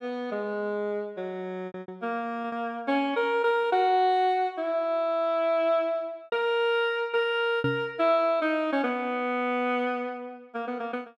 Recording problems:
packet loss; 3% of the sound replaced, filled with repeated pitch periods
microphone thump; at 7.5 s; peak +1 dB vs average level

